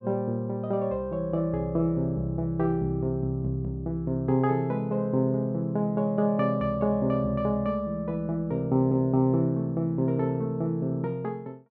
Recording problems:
none

